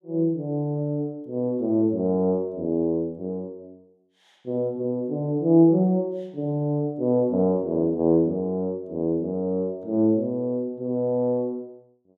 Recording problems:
none

